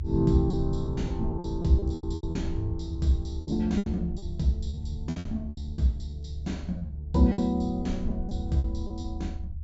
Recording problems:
treble missing; nothing above 8 kHz
rumble; below 78 Hz, SNR 6 dB
packet loss; 14% of the sound replaced, filled with repeated pitch periods

